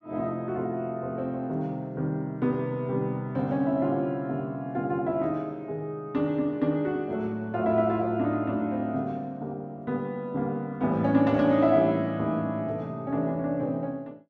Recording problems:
none

